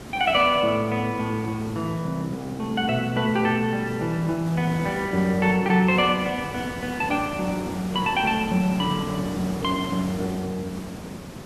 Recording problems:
hiss; slope -6 dB per octave, SNR 11 dB

